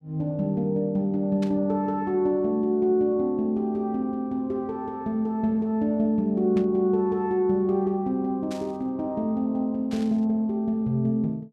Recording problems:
static burst; 4 times, first at 1.5 s; peak -12 dB vs average level

